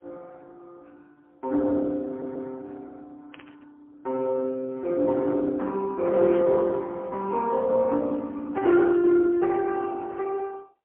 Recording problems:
telephone audio; 220 Hz to 2.8 kHz, AMR-NB, then MP3
stutter; at 2 s
burst of static; at 3.5 s and at 6.5 s; peak -18 dB vs average level

